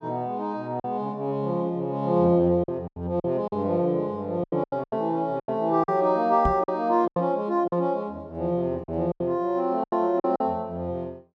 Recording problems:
lost packets; 9% of the sound replaced, filled with silence
microphone thump; at 6.5 s; peak +1 dB vs average level

